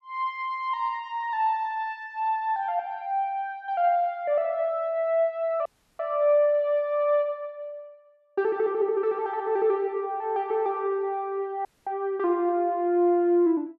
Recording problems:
dropout; at 5.5 s and at 12 s

